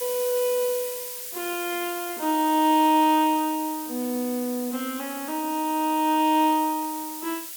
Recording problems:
hiss; SNR 9 dB

